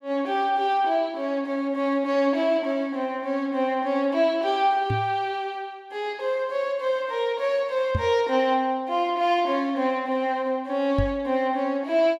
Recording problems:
microphone bump; at 5 s, at 8 s and at 11 s; peak +2 dB vs average level

